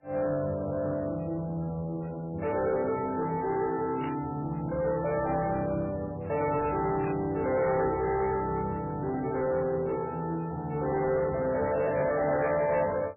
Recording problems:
codec artefacts; MP3, log-spectral distance 3 dB, nothing above 2.7 kHz
distortion; soft clipping, signal-to-distortion ratio 11 dB
static burst; at 4 s and at 7 s; peak -7 dB vs average level

